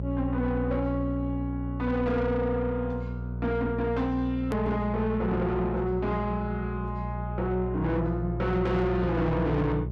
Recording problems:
distortion; soft clipping, signal-to-distortion ratio 7 dB
hum; 60 Hz, harmonics up to 600 Hz, SNR 5 dB
click at an edit; at 4.5 s

